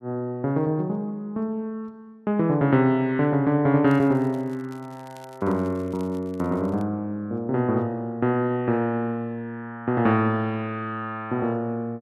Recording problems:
crackle; from 4 to 7 s; loose cable, SNR 29 dB

